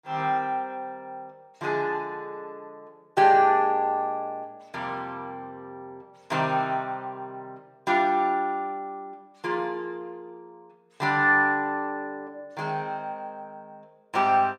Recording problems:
none

